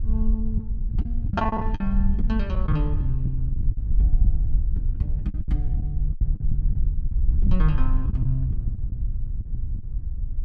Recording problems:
wind on the microphone; below 60 Hz, SNR -4 dB
lost packets; 11% of the sound replaced, filled with the last packet

